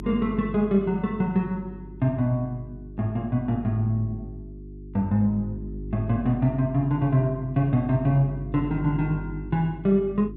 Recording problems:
hum; 50 Hz, harmonics up to 400 Hz, SNR 13 dB

